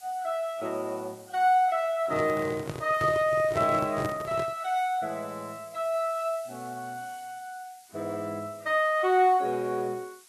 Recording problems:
lossy compression; Vorbis, log-spectral distance 5 dB
background hiss; slope +3 dB per octave, SNR 24 dB
microphone handling noise; from 2 to 4.5 s; peak -2 dB vs average level

